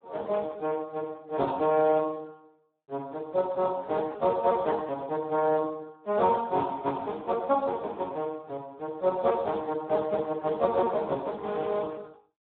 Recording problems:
phone line; 280 Hz to 3.7 kHz, Speex

